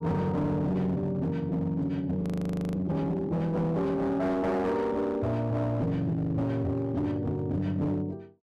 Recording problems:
distorted audio; hard clipping, uneven, signal-to-distortion ratio 10 dB
audio freezing; at 2 s for 0.5 s

